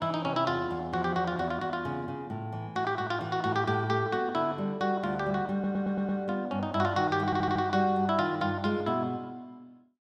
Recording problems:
audio stuttering; at 5.5 s and at 7.5 s

